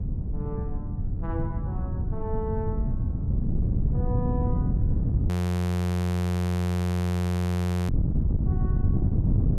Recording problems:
wind on the microphone; below 180 Hz, SNR -10 dB
frozen audio; at 5.5 s for 2.5 s

